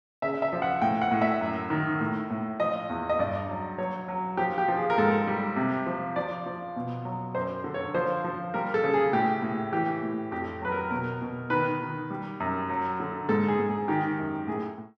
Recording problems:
none

